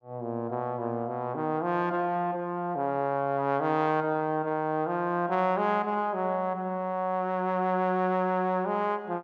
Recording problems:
none

